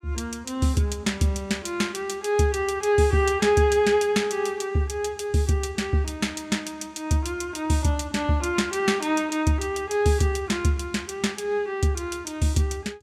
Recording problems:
none

